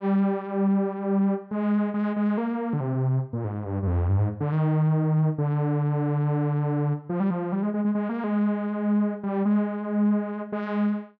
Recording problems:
none

